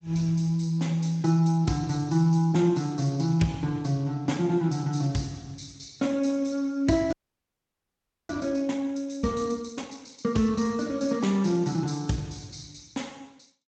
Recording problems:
lossy codec; Speex, log-spectral distance 7 dB, nothing above 7.3 kHz
frozen audio; at 7 s for 1 s

